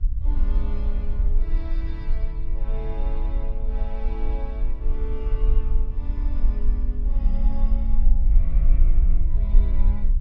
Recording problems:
low-frequency rumble; below 44 Hz, strongest tone 18 Hz, SNR -13 dB
wind noise; below 450 Hz, SNR 21 dB

